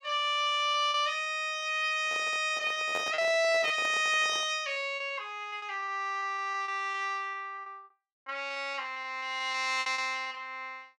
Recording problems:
packet loss; 10% of the sound replaced, filled with repeated pitch periods
microphone handling noise; from 2 to 4.5 s; peak -5 dB vs average level

